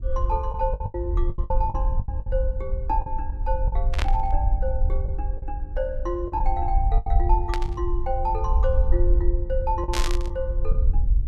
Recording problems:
low-frequency rumble; below 58 Hz, SNR -3 dB
packet loss; 8% of the sound replaced, filled with the last packet
static burst; at 4 s, at 7.5 s and at 10 s; peak +5 dB vs average level

